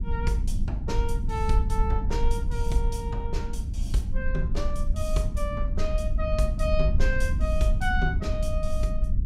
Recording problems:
low-frequency rumble; below 66 Hz, SNR -2 dB

